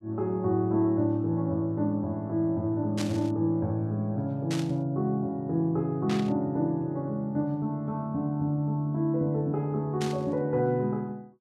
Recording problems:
burst of static; 4 times, first at 3 s; peak -4 dB vs average level

